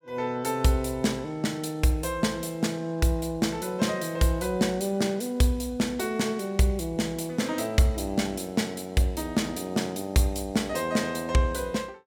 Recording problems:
none

